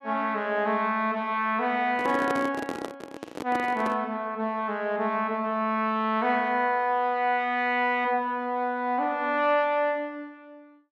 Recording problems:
microphone handling noise; from 2 to 4 s; peak -2 dB vs average level

